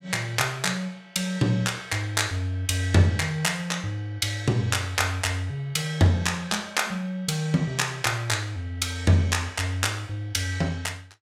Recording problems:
none

